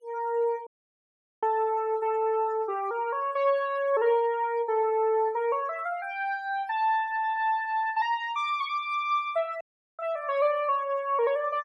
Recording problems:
noise reduction artefacts; signal-to-artefact ratio 27 dB
audio cutting out; at 0.5 s for 0.5 s and at 9.5 s

